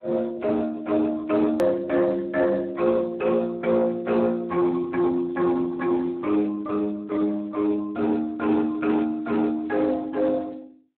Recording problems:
phone line; 240 Hz to 2.2 kHz, Speex
distortion; soft clipping, signal-to-distortion ratio 12 dB
edit click; at 1.5 s

